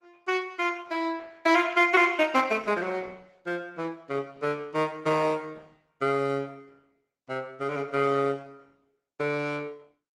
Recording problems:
lossy compression; Opus, log-spectral distance 3 dB, nothing above 16.6 kHz

